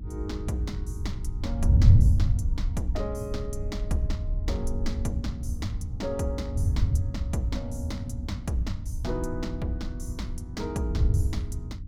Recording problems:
hum; 60 Hz, harmonics up to 300 Hz, SNR 11 dB
rumble; below 56 Hz, SNR 4 dB
wind noise; below 110 Hz, SNR -5 dB

